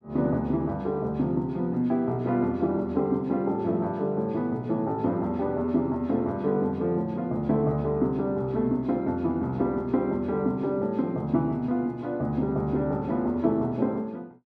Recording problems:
none

